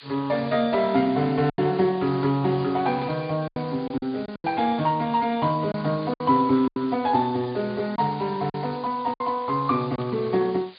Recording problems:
treble missing; nothing above 4.8 kHz
lossy codec; Speex, log-spectral distance 13 dB
background hiss; SNR 21 dB
lost packets; 6% of the sound replaced, filled with silence
burst of static; at 3 s and at 10 s; peak -13 dB vs average level

